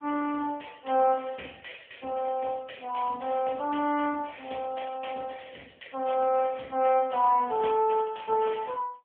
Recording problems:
telephone audio; 260 Hz to 3 kHz, AMR-NB

